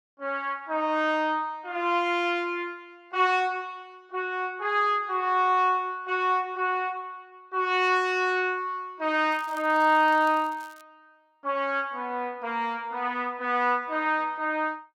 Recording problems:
crackling; from 9.5 to 11 s; loose cable, SNR 27 dB

